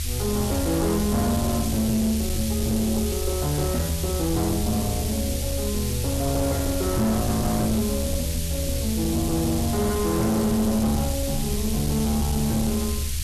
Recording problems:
distorted audio; hard clipping, signal-to-distortion ratio 11 dB
hiss; SNR 6 dB
rumble; below 76 Hz, strongest tone 74 Hz, SNR 5 dB

